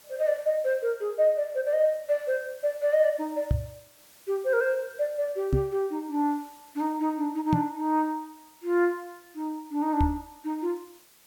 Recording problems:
hiss; slope 0 dB per octave, SNR 26 dB
microphone thump; 4 times, first at 3.5 s; peak +6 dB vs average level

